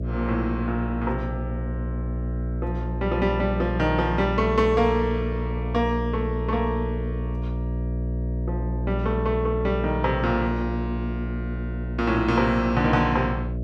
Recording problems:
hum; 60 Hz, harmonics up to 660 Hz, SNR 4 dB

